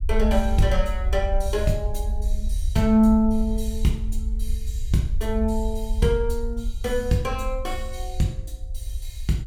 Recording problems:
low-frequency rumble; below 60 Hz, SNR 5 dB

